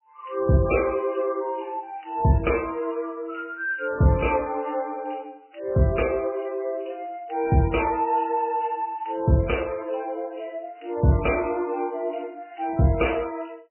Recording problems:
lossy codec; MP3, log-spectral distance 5 dB

